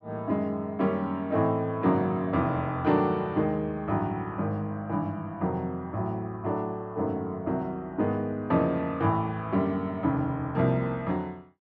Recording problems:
none

